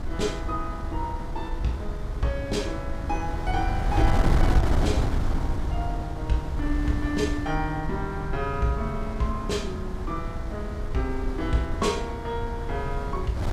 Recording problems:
wind on the microphone; below 110 Hz, SNR 0 dB

